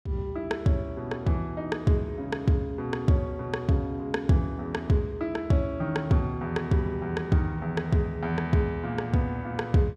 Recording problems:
none

